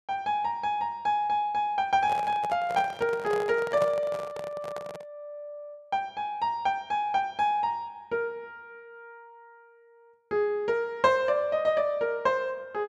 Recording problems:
microphone handling noise; from 2 to 5 s; peak -2 dB vs average level

